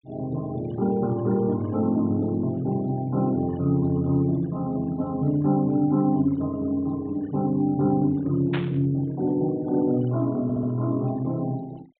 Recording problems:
low-pass filter; nothing above 4 kHz
noise reduction artefacts; signal-to-artefact ratio 25 dB
burst of static; at 8.5 s; peak -4 dB vs average level
stutter; at 10 s

